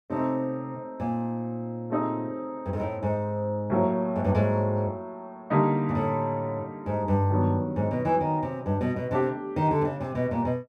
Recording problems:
none

